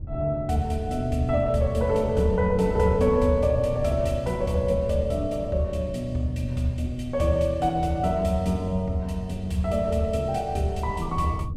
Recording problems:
wind on the microphone; below 130 Hz, SNR 11 dB

